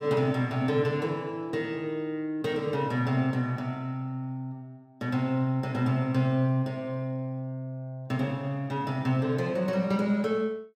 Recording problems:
none

